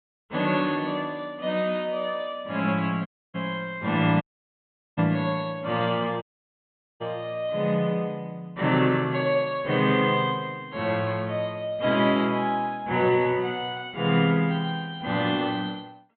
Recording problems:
low-pass filter; nothing above 4 kHz
dropout; at 3 s, at 4 s for 1 s and at 6 s for 1 s

